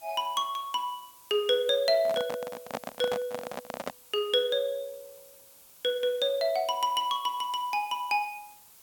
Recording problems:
background hiss; SNR 22 dB
handling noise; from 2 to 4 s; peak -1 dB vs average level

